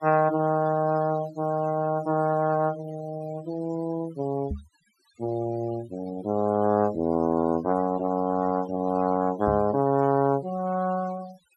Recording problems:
denoising artefacts; signal-to-artefact ratio 20 dB
microphone thump; at 4.5 s and at 9.5 s; peak -2 dB vs average level

